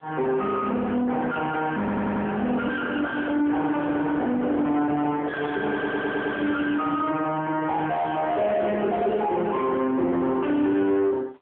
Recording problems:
phone line; 220 Hz to 3.3 kHz, AMR-NB
distortion; soft clipping, signal-to-distortion ratio 7 dB
stutter; at 2 s and at 5.5 s
handling noise; from 2.5 to 6.5 s; peak +1 dB vs average level
crackling; from 5.5 to 7 s; loose cable, SNR 24 dB

